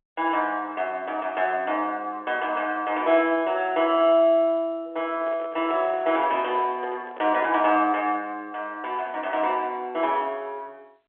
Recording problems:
telephone audio; 280 Hz to 3.5 kHz, G.711
handling noise; from 5 to 8 s; peak -9 dB vs average level

